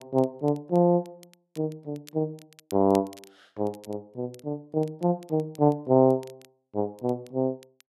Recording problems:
crackle; vinyl, SNR 27 dB

